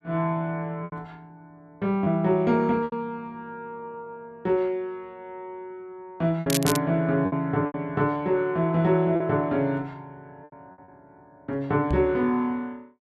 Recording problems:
lost packets; 5% of the sound replaced, filled with repeated pitch periods
crackle; at 6.5 s; loose cable, SNR 5 dB
knock on the microphone; at 12 s; peak +1 dB vs average level

